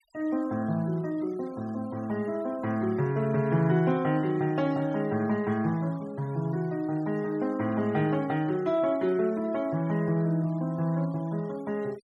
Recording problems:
denoising artefacts; signal-to-artefact ratio 25 dB

